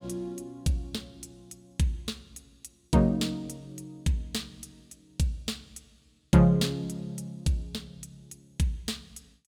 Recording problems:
none

